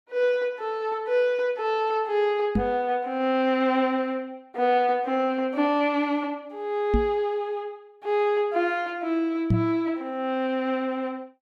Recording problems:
microphone bump; at 2.5 s, at 7 s and at 9.5 s; peak +6 dB vs average level

